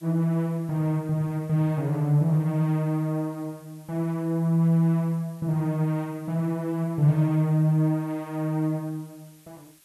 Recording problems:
background hiss; slope +1 dB per octave, SNR 30 dB

